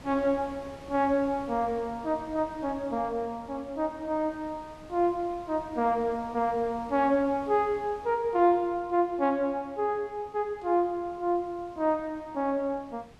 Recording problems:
wind on the microphone; below 1.1 kHz, SNR 22 dB

